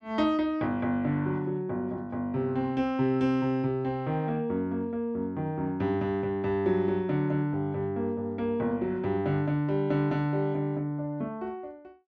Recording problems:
none

